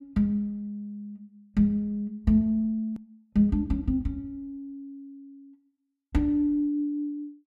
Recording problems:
hard cut with a click; at 3 s

